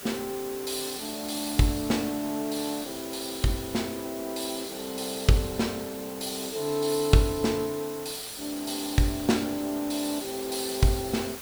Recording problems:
hiss; slope -2 dB per octave, SNR 11 dB

